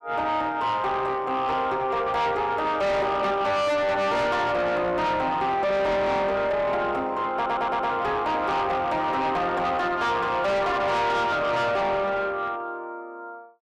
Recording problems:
distorted audio; soft clipping, signal-to-distortion ratio 6 dB
stutter; at 7.5 s

